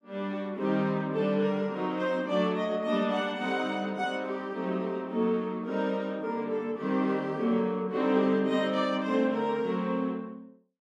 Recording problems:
none

